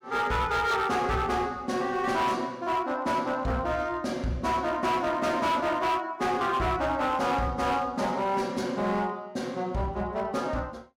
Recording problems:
distortion; hard clipping, signal-to-distortion ratio 10 dB

